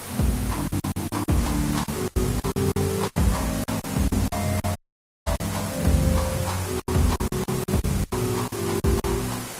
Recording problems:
codec artefacts; Vorbis, then Opus, log-spectral distance 9 dB
background hiss; slope -3 dB per octave, SNR 8 dB
packet loss; 14% of the sound replaced, filled with silence
dropout; at 5 s for 0.5 s

